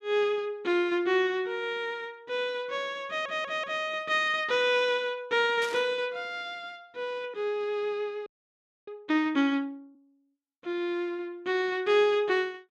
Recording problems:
audio stuttering; at 3 s
static burst; at 5.5 s; peak -7 dB vs average level
audio freezing; at 8.5 s for 0.5 s

